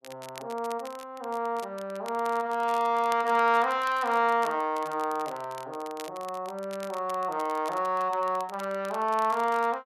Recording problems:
crackle; vinyl, SNR 20 dB

